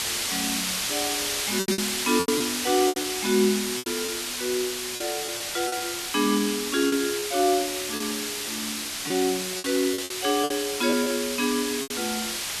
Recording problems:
hiss; slope +2 dB per octave, SNR 1 dB
lost packets; 9% of the sound replaced, filled with repeated pitch periods

